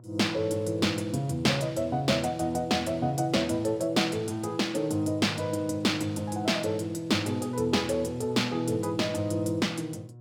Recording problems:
hum; 60 Hz, harmonics up to 720 Hz, SNR 19 dB

